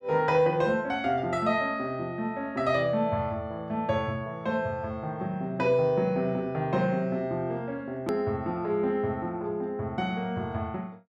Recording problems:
click at an edit; at 8 s

